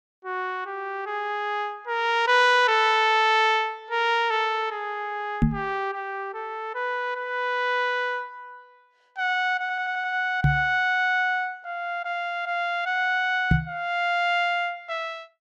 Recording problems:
microphone bump; at 5.5 s, at 10 s and at 14 s; peak +7 dB vs average level
audio stuttering; at 9.5 s

